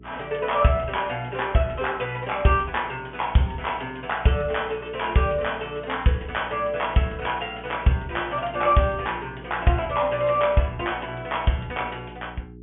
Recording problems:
low-pass filter; nothing above 3.4 kHz
electrical hum; 60 Hz, harmonics up to 420 Hz, SNR 19 dB

